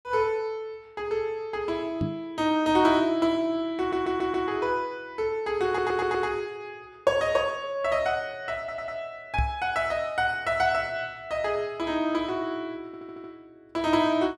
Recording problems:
microphone thump; at 2 s and at 9.5 s; peak +3 dB vs average level
audio stuttering; 4 times, first at 4 s

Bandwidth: 13.5 kHz